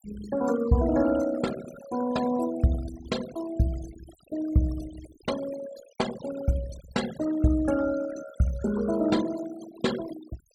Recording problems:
denoising artefacts; signal-to-artefact ratio 14 dB

